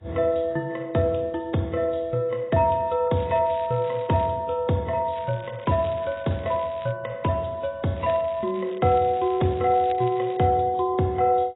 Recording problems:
lossy codec; AAC, log-spectral distance 3 dB, nothing above 3.8 kHz
crackle; from 3 to 4.5 s, from 5 to 7 s and from 8 to 10 s; loose cable, SNR 25 dB

